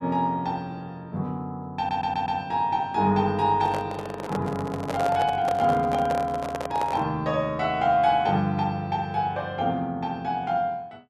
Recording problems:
stutter; at 2 s
handling noise; from 3.5 to 7 s; peak -1 dB vs average level

